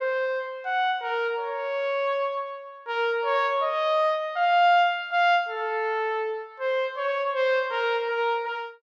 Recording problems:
treble cut off; nothing above 8 kHz

